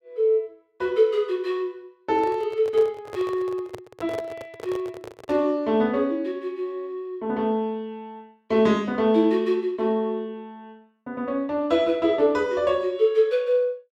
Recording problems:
handling noise; from 2 to 5.5 s; peak -5 dB vs average level

